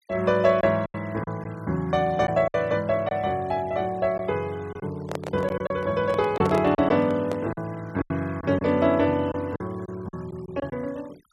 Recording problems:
noise reduction artefacts; signal-to-artefact ratio 25 dB
packet loss; 7% of the sound replaced, filled with silence
microphone handling noise; from 5 to 7.5 s; peak -2 dB vs average level

